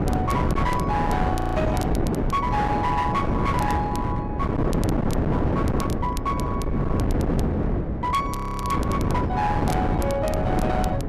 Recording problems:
distorted audio; hard clipping, uneven, signal-to-distortion ratio 11 dB
wind on the microphone; below 410 Hz, SNR -2 dB
crackle; vinyl, SNR 17 dB
audio freezing; at 1.5 s and at 8.5 s

